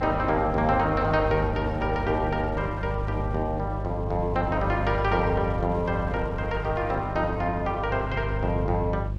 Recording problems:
hum; 50 Hz, harmonics up to 500 Hz, SNR 6 dB
wind on the microphone; below 170 Hz, SNR 15 dB

